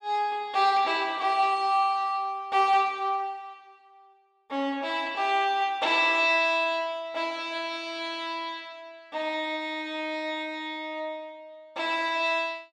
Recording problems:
none

